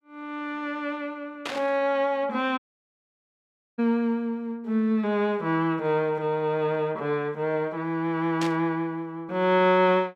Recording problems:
burst of static; at 1.5 s and at 8.5 s; peak -2 dB vs average level
audio cutting out; at 2.5 s for 1 s

